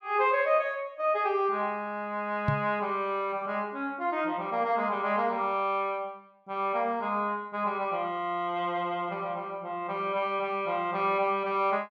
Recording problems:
microphone bump; at 2.5 s; peak +5 dB vs average level

